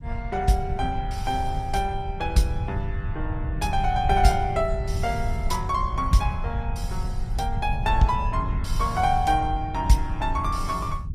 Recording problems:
codec artefacts; Opus, log-spectral distance 2 dB, nothing above 15.5 kHz
low-frequency rumble; below 94 Hz, SNR 4 dB

